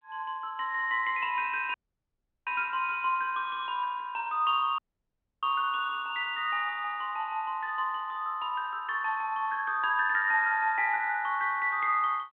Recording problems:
telephone audio; 240 Hz to 3.5 kHz, G.726
audio cutting out; at 1.5 s for 0.5 s and at 5 s for 0.5 s

